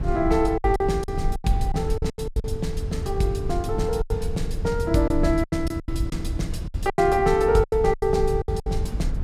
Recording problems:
rumble; below 92 Hz, SNR 6 dB
lost packets; 13% of the sound replaced, filled with silence

